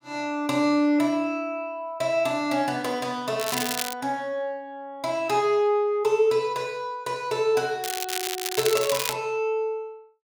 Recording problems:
crackling; at 3.5 s and from 8 to 9 s; loose cable, SNR 4 dB

